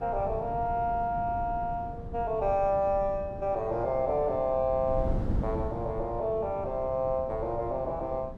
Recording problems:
wind noise; below 200 Hz, SNR 9 dB

